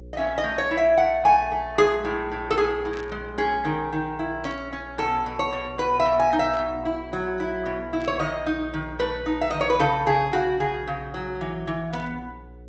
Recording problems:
treble missing; nothing above 8 kHz
lossy codec; Opus, log-spectral distance 2 dB
hum; 60 Hz, harmonics up to 540 Hz, SNR 19 dB
static burst; 5 times, first at 3 s; peak -14 dB vs average level

